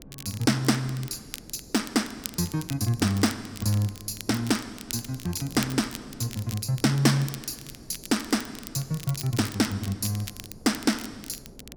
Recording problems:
wind noise; below 350 Hz, SNR 21 dB
crackle; vinyl, SNR 14 dB

